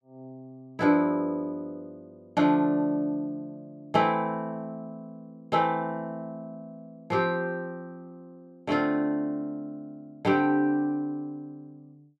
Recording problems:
none

